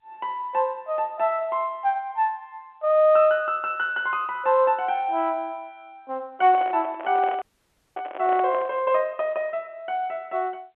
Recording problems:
phone line; 280 Hz to 3.6 kHz, G.711
handling noise; from 6.5 to 9 s; peak -5 dB vs average level
audio freezing; at 7.5 s for 0.5 s

